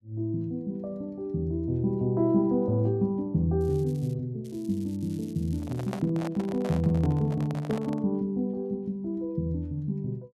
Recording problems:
crackling; at 3.5 s and from 4.5 to 6 s; loose cable, SNR 27 dB
handling noise; from 5.5 to 8 s; peak -4 dB vs average level

